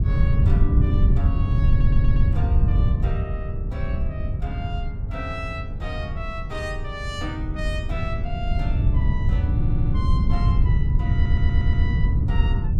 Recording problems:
wind noise; below 110 Hz, SNR -11 dB
audio stuttering; at 1.5 s, at 9.5 s and at 11 s

